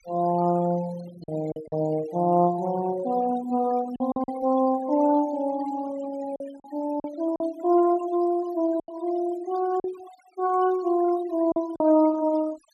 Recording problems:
denoising artefacts; signal-to-artefact ratio 20 dB
packet loss; 5% of the sound replaced, filled with silence

